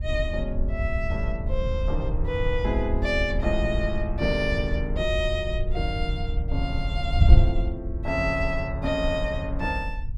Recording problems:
wind noise; below 78 Hz, SNR 0 dB

